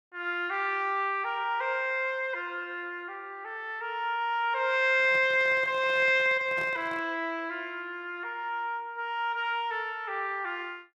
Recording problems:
microphone handling noise; from 5 to 7 s; peak -10 dB vs average level

